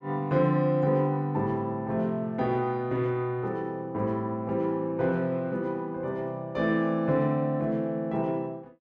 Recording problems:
none

